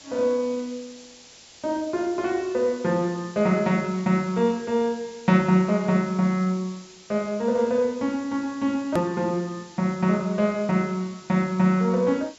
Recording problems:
low-pass filter; nothing above 8 kHz
hiss; SNR 22 dB
hard cut with a click; at 9 s

